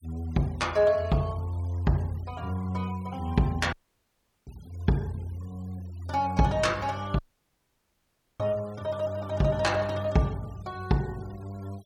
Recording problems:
denoising artefacts; signal-to-artefact ratio 24 dB
audio cutting out; at 3.5 s for 0.5 s and at 7 s for 1 s

